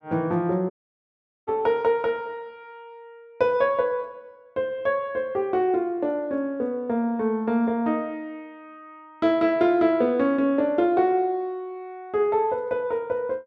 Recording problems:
audio cutting out; at 0.5 s for 1 s

